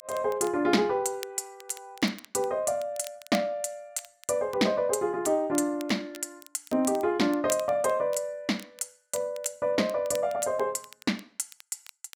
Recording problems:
crackling; vinyl, SNR 20 dB

